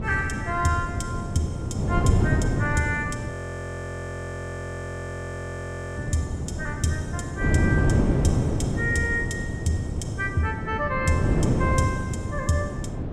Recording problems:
wind noise; below 290 Hz, SNR -1 dB
audio freezing; at 3.5 s for 2.5 s

